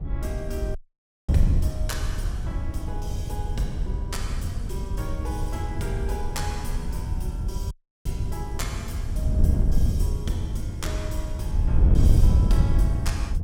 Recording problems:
wind noise; below 92 Hz, SNR -9 dB
audio cutting out; at 1 s for 0.5 s and at 7.5 s

